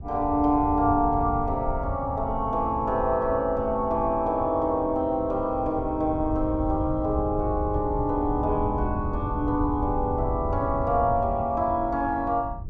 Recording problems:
wind on the microphone; below 110 Hz, SNR 8 dB

